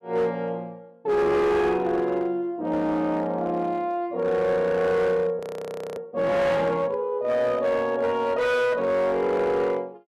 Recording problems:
distorted audio; hard clipping, signal-to-distortion ratio 11 dB
frozen audio; at 5.5 s for 0.5 s

